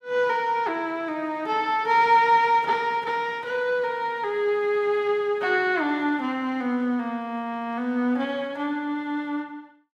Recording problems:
none

